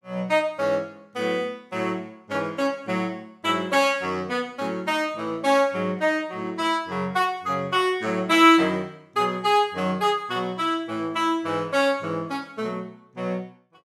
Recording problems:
none

